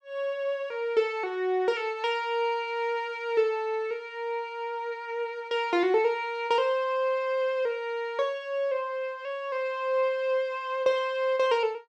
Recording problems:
none

